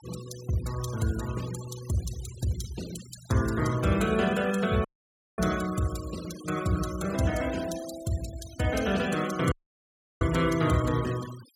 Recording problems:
denoising artefacts; signal-to-artefact ratio 14 dB
audio cutting out; at 5 s for 0.5 s and at 9.5 s for 0.5 s

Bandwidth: 17 kHz